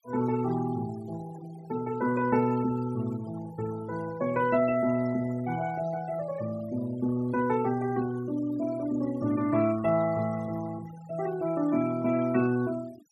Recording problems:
denoising artefacts; signal-to-artefact ratio 18 dB

